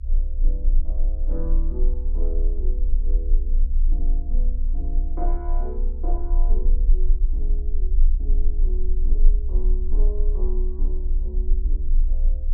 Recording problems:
rumble; below 32 Hz, strongest tone 26 Hz, SNR -15 dB

